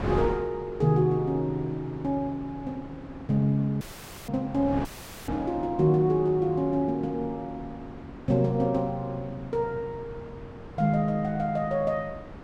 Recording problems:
wind on the microphone; below 520 Hz, SNR 14 dB
dropout; at 4 s and at 5 s

